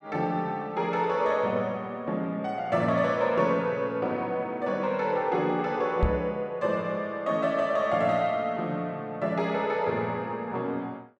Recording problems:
microphone thump; at 6 s; peak +6 dB vs average level

